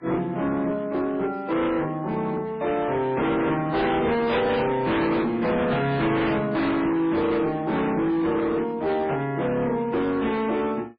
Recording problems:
lossy codec; MP3, then MP3, log-spectral distance 2 dB
distorted audio; hard clipping, signal-to-distortion ratio 7 dB

